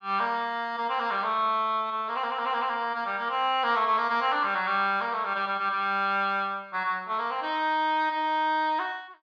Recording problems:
none

